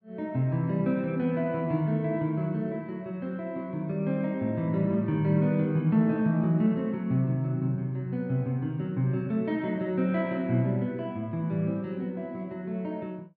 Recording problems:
none

